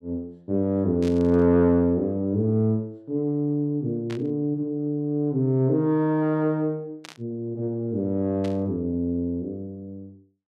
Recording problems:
burst of static; 4 times, first at 1 s; peak -12 dB vs average level

